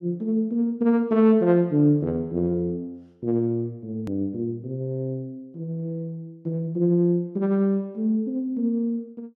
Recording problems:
hard cut with a click; at 4 s

